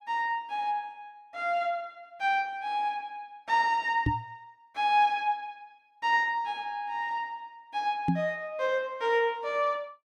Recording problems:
microphone bump; at 4 s and at 8 s; peak +6 dB vs average level

